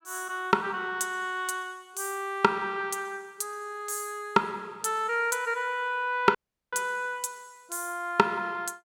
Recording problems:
audio cutting out; at 6.5 s

